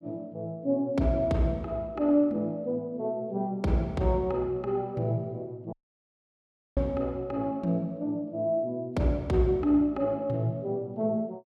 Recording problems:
dropout; at 5.5 s for 1 s

